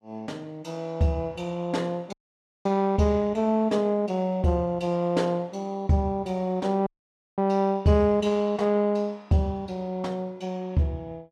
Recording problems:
dropout; at 2 s for 0.5 s and at 7 s for 0.5 s

